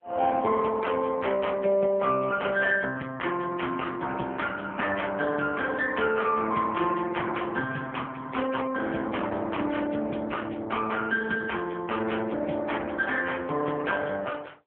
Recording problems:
telephone audio; 220 Hz to 2.8 kHz, AMR-NB

